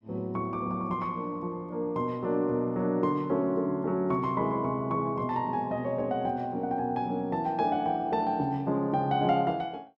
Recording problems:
none

